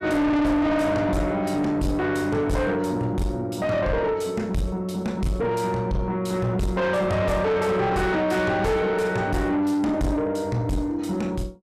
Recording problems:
distorted audio; soft clipping, signal-to-distortion ratio 7 dB

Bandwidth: 14 kHz